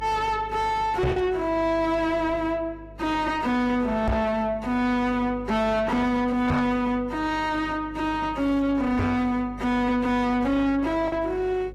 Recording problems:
lossy compression; AAC, log-spectral distance 2 dB, nothing above 12.3 kHz
distorted audio; soft clipping, signal-to-distortion ratio 6 dB
mains hum; 50 Hz, harmonics up to 550 Hz, SNR 19 dB
packet loss; 0.7% of the sound replaced, filled with the last packet
microphone thump; 4 times, first at 1 s; peak +6 dB vs average level

